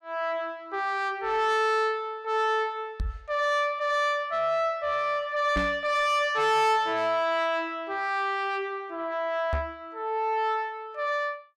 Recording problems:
distorted audio; soft clipping, signal-to-distortion ratio 10 dB
microphone thump; at 3 s, at 5.5 s and at 9.5 s; peak +1 dB vs average level

